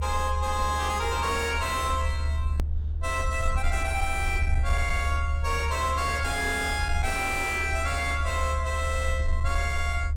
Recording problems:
distortion; soft clipping, signal-to-distortion ratio 6 dB
low-frequency rumble; below 76 Hz, strongest tone 74 Hz, SNR 1 dB
hard cut with a click; at 2.5 s

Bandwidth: 17 kHz